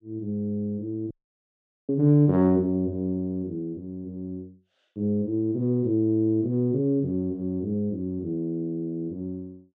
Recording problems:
dropout; at 1 s for 1 s

